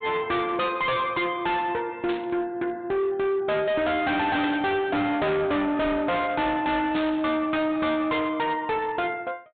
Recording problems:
low-pass filter; nothing above 4 kHz
distortion; hard clipping, signal-to-distortion ratio 6 dB
static burst; at 2 s, at 4.5 s and at 7 s; peak -5 dB vs average level

